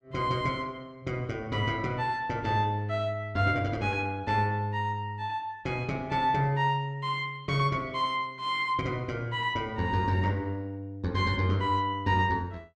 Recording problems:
none

